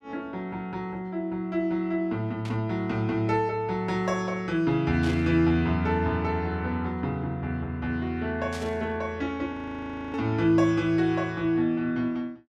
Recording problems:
static burst; 4 times, first at 2.5 s; peak -9 dB vs average level
audio freezing; at 9.5 s for 0.5 s

